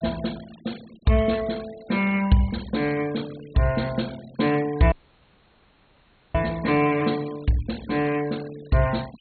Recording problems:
treble cut off; nothing above 4.3 kHz
denoising artefacts; signal-to-artefact ratio 20 dB
audio cutting out; at 5 s for 1.5 s

